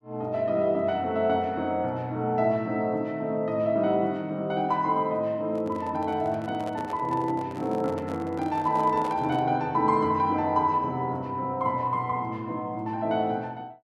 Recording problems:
microphone handling noise; from 5.5 to 9.5 s; peak -6 dB vs average level

